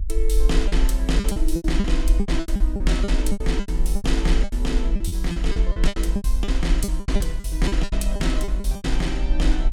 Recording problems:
rumble; below 46 Hz, SNR -3 dB
lost packets; 18% of the sound replaced, filled with repeated pitch periods

